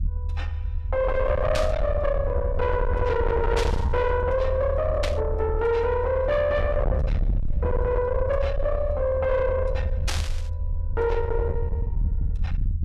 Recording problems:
distortion; soft clipping, signal-to-distortion ratio 7 dB
low-frequency rumble; below 82 Hz, SNR 3 dB
static burst; 4 times, first at 1.5 s; peak 0 dB vs average level

